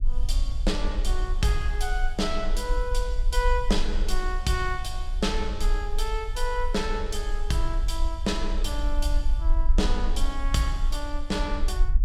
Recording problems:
low-frequency rumble; below 42 Hz, strongest tone 24 Hz, SNR 0 dB

